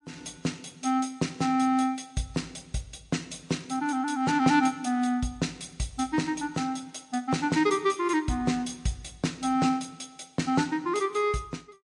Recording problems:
lossy compression; MP3, log-spectral distance 3 dB, nothing above 9.2 kHz

